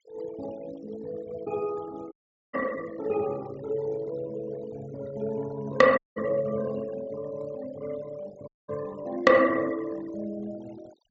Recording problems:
treble missing; nothing above 8 kHz
noise reduction artefacts; signal-to-artefact ratio 20 dB
dropout; at 2 s, at 6 s and at 8.5 s

